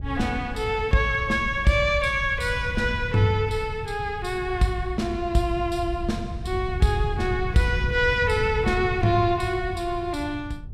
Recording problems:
wind on the microphone; below 110 Hz, SNR 9 dB

